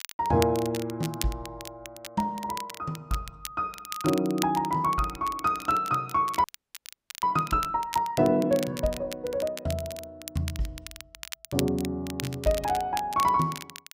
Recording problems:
crackling; vinyl, SNR 12 dB
audio freezing; at 6.5 s for 1 s

